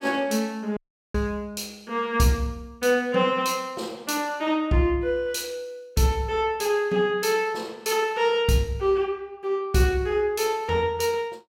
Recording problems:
audio cutting out; at 1 s

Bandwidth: 17 kHz